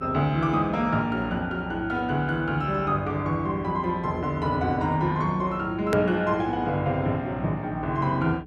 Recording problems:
electrical hum; 60 Hz, harmonics up to 420 Hz, SNR 19 dB
click at an edit; at 6 s

